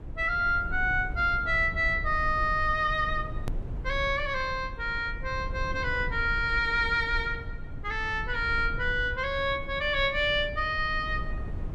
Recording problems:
rumble; below 84 Hz, SNR 11 dB
hard cut with a click; at 3.5 s

